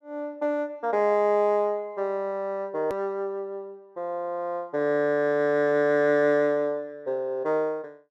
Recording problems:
hard cut with a click; at 3 s

